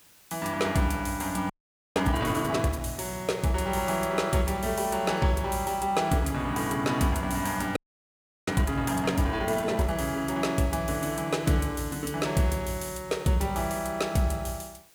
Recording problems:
background hiss; slope -1 dB per octave, SNR 28 dB
frozen audio; at 1.5 s and at 8 s for 0.5 s

